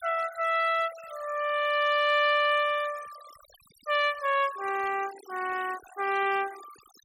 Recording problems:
noise reduction artefacts; signal-to-artefact ratio 19 dB

